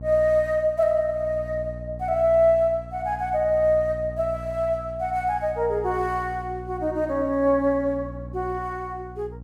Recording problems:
hum; 60 Hz, harmonics up to 540 Hz, SNR 15 dB

